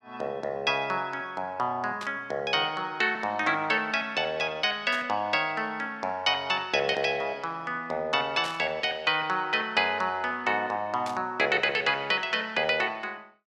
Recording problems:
static burst; 4 times, first at 2 s; peak -7 dB vs average level

